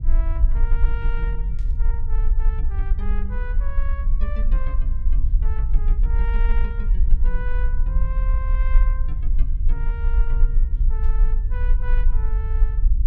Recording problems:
low-frequency rumble; below 44 Hz, strongest tone 24 Hz, SNR -15 dB
static burst; at 1.5 s and at 11 s; peak -11 dB vs average level

